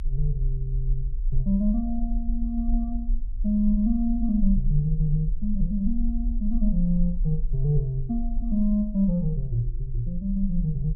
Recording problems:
low-frequency rumble; below 40 Hz, SNR 5 dB

